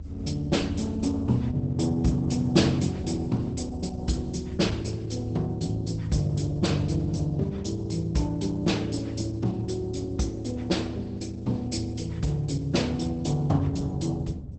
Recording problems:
lossy compression; Opus, log-spectral distance 3 dB, nothing above 8.2 kHz
electrical hum; 60 Hz, harmonics up to 300 Hz, SNR 24 dB
low-frequency rumble; below 100 Hz, strongest tone 76 Hz, SNR 11 dB

